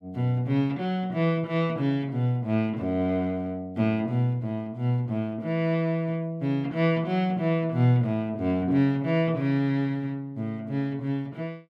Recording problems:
none

